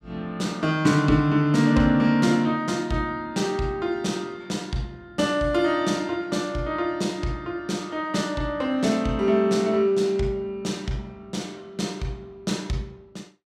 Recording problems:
none

